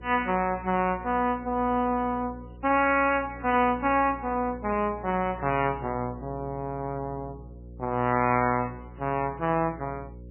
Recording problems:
lossy codec; MP3, log-spectral distance 2 dB, nothing above 2.5 kHz
mains hum; 60 Hz, harmonics up to 540 Hz, SNR 18 dB

